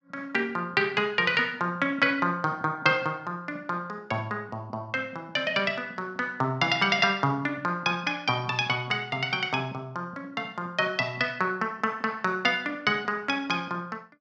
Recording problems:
none

